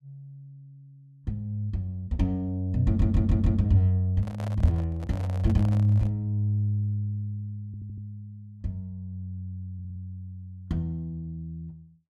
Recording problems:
stutter; at 3 s, at 7.5 s and at 9.5 s
handling noise; from 4 to 6 s; peak -9 dB vs average level

